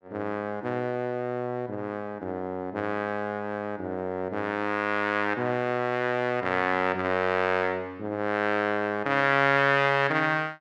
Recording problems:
none

